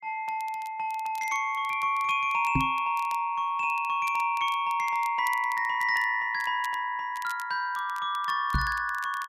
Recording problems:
crackling; vinyl, SNR 22 dB
knock on the microphone; at 2.5 s and at 8.5 s; peak +4 dB vs average level

